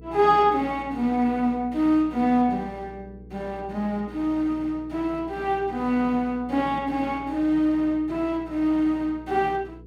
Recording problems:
electrical hum; 60 Hz, harmonics up to 480 Hz, SNR 21 dB

